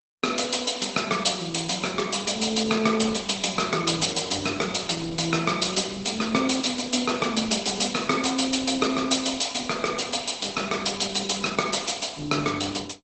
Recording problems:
codec artefacts; Opus, log-spectral distance 9 dB, nothing above 8.2 kHz

